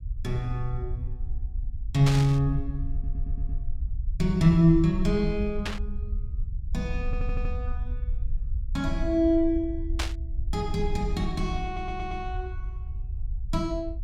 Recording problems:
rumble; below 62 Hz, SNR 7 dB
static burst; at 2 s, at 5.5 s and at 10 s; peak 0 dB vs average level
stutter; at 3 s, at 7 s and at 12 s

